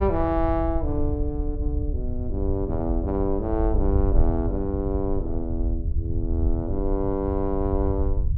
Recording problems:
rumble; below 80 Hz, SNR 0 dB

